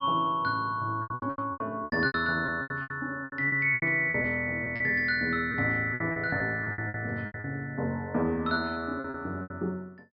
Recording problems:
treble cut off; nothing above 5.5 kHz
packet loss; 16% of the sound replaced, filled with repeated pitch periods

